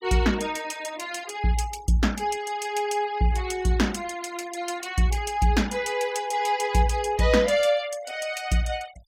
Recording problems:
denoising artefacts; signal-to-artefact ratio 21 dB

